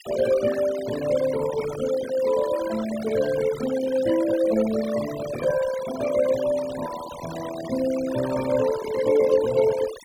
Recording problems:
denoising artefacts; signal-to-artefact ratio 13 dB

